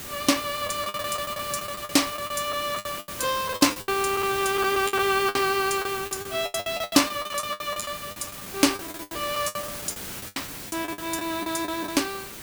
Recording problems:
background hiss; slope -2 dB per octave, SNR 9 dB
lost packets; 19% of the sound replaced, filled with the last packet

